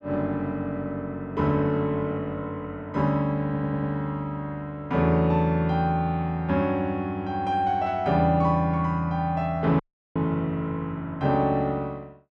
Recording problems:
stutter; at 3.5 s
audio cutting out; at 10 s

